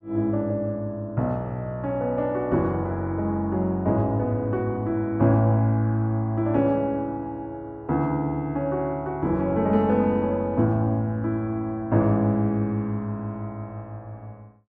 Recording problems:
none

